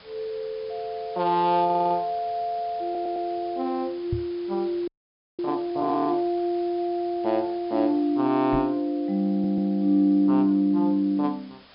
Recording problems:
low-pass filter; nothing above 5.1 kHz
background hiss; SNR 25 dB
audio stuttering; at 1.5 s, at 3 s and at 9.5 s
microphone bump; at 4 s and at 8.5 s; peak 0 dB vs average level
frozen audio; at 5 s for 0.5 s

